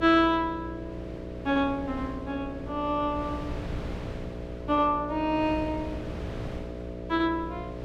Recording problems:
hum; 60 Hz, harmonics up to 660 Hz, SNR 10 dB
wind noise; below 400 Hz, SNR 14 dB

